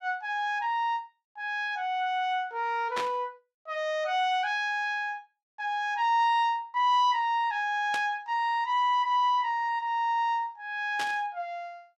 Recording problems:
burst of static; at 3 s, at 8 s and at 11 s; peak -2 dB vs average level

